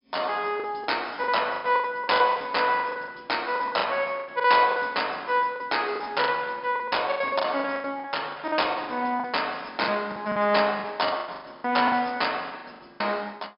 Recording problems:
low-pass filter; nothing above 5.5 kHz
lost packets; 16% of the sound replaced, filled with the last packet

